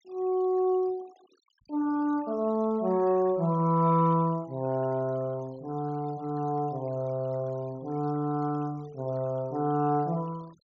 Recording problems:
treble missing; nothing above 7.1 kHz
noise reduction artefacts; signal-to-artefact ratio 28 dB

